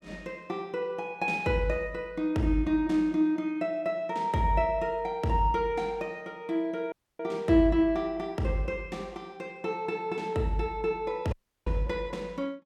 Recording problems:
dropout; at 7 s and at 11 s

